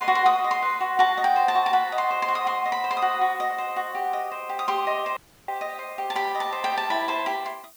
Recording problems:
hiss; slope +1 dB per octave, SNR 25 dB
dropout; at 5 s

